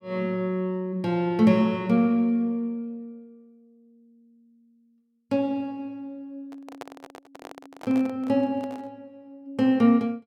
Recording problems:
microphone handling noise; from 6.5 to 9 s; peak -9 dB vs average level

